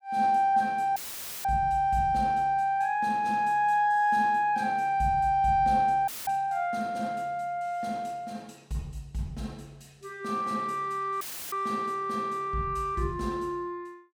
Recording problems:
audio cutting out; at 1 s, at 6 s and at 11 s; filled with static

